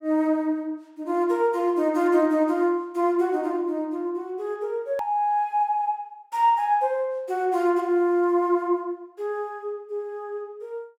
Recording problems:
click at an edit; at 5 s

